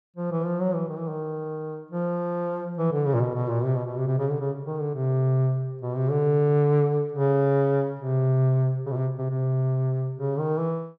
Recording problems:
none

